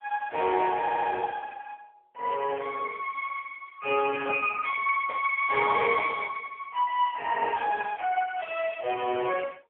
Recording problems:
phone line; 320 Hz to 3.3 kHz, AMR-NB
audio stuttering; at 1 s

